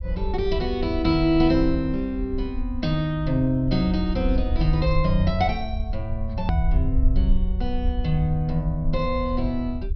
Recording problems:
treble missing; nothing above 5.5 kHz
rumble; below 66 Hz, SNR 4 dB
edit click; at 6.5 s

